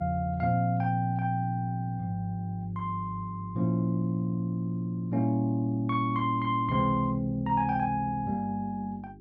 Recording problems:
hum; 50 Hz, harmonics up to 400 Hz, SNR 23 dB

